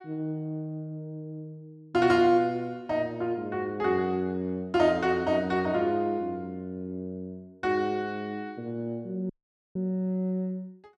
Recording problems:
dropout; at 9.5 s

